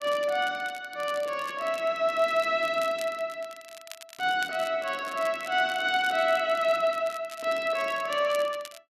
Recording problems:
crackle; vinyl, SNR 19 dB

